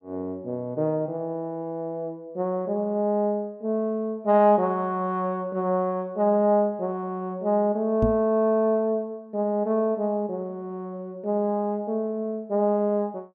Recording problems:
microphone thump; at 8 s; peak +4 dB vs average level

